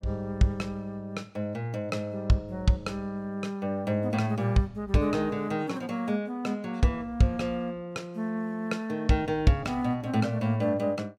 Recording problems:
none

